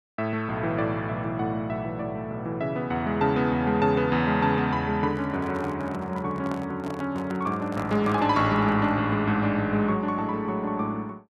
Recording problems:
microphone handling noise; from 5 to 9 s; peak -7 dB vs average level

